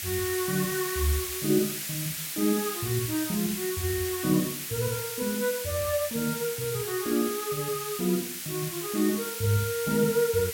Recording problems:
background hiss; slope +3 dB per octave, SNR 4 dB

